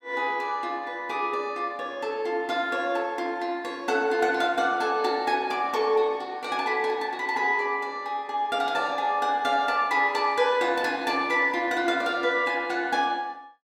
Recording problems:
none

